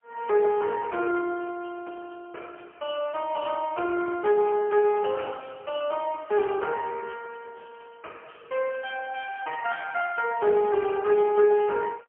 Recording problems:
telephone audio; 280 Hz to 2.9 kHz, AMR-NB, then MP3

